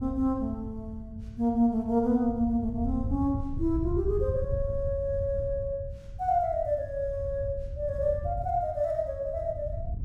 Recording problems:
wind on the microphone; below 100 Hz, SNR 8 dB

